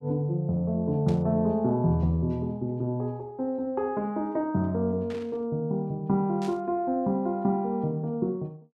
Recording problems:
static burst; at 1 s, at 5 s and at 6.5 s; peak -13 dB vs average level

